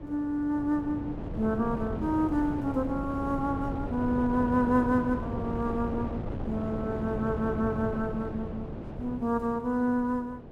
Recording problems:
wind noise; below 400 Hz, SNR 7 dB

